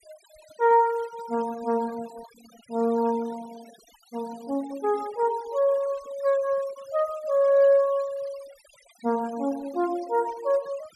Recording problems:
noise reduction artefacts; signal-to-artefact ratio 22 dB

